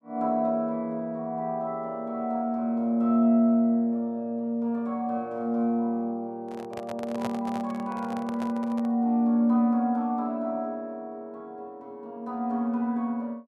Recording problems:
handling noise; from 6.5 to 9 s; peak -2 dB vs average level

